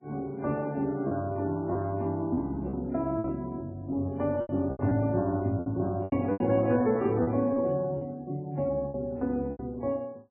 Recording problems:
lossy codec; Vorbis, then MP3, log-spectral distance 2 dB
packet loss; 8% of the sound replaced, filled with repeated pitch periods

